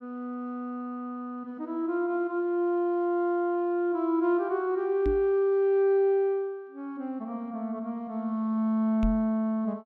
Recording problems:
microphone bump; at 5 s and at 9 s; peak 0 dB vs average level

